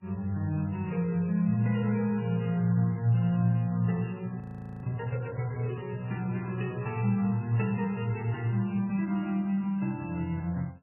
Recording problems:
lossy codec; MP3, then AAC, log-spectral distance 2 dB, nothing above 2.4 kHz
audio freezing; at 4.5 s

